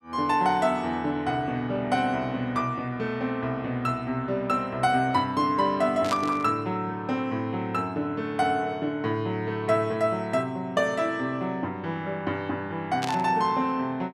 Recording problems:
burst of static; at 6 s and at 13 s; peak -2 dB vs average level

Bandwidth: 14.5 kHz